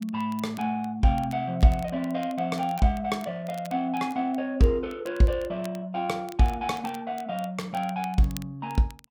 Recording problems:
crackling; vinyl, SNR 22 dB

